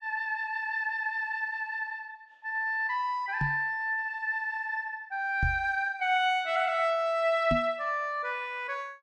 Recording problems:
microphone bump; at 3.5 s, at 5.5 s and at 7.5 s; peak +2 dB vs average level

